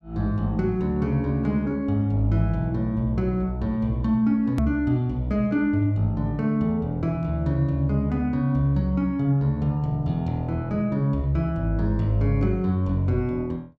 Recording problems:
click at an edit; at 4.5 s

